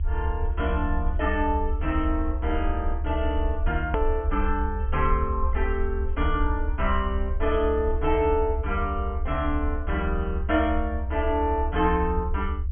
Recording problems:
low-pass filter; nothing above 3.3 kHz
low-frequency rumble; below 68 Hz, SNR 2 dB
hard cut with a click; at 4 s

